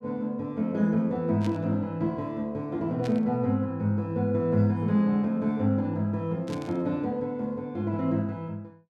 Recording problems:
static burst; at 1.5 s, at 3 s and at 6.5 s; peak -10 dB vs average level

